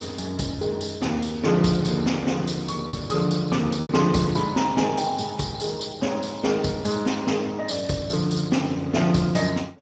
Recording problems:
codec artefacts; Speex, log-spectral distance 5 dB, nothing above 7.6 kHz
lost packets; 1.7% of the sound replaced, filled with repeated pitch periods

